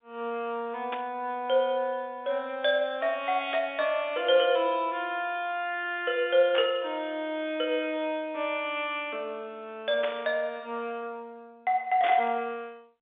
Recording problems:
telephone audio; 280 Hz to 3.6 kHz, G.711
static burst; 5 times, first at 1 s; peak -2 dB vs average level

